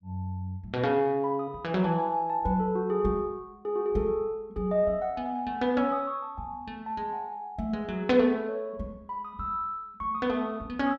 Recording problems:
none

